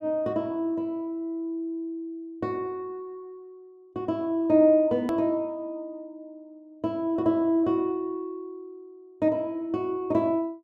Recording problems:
hard cut with a click; at 5 s

